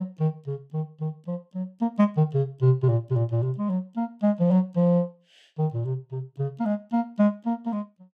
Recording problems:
none

